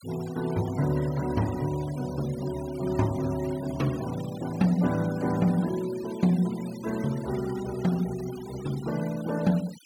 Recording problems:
denoising artefacts; signal-to-artefact ratio 18 dB

